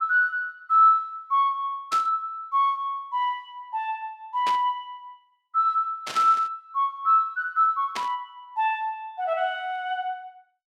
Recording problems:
static burst; 4 times, first at 2 s; peak -4 dB vs average level

